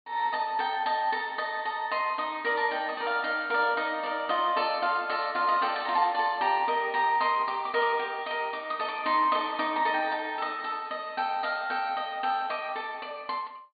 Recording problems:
treble cut off; nothing above 4.6 kHz

